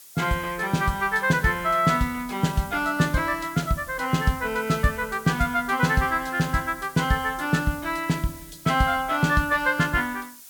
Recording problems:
hiss; slope +2 dB per octave, SNR 19 dB

